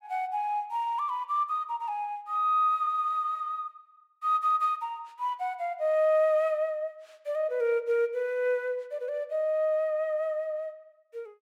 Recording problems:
none

